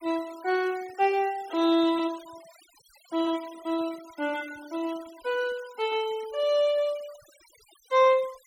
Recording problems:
noise reduction artefacts; signal-to-artefact ratio 22 dB

